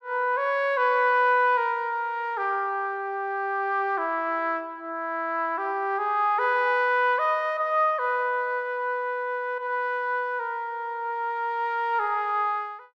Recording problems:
none

